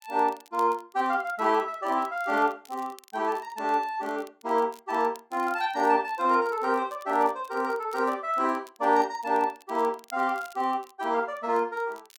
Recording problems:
crackling; vinyl, SNR 27 dB

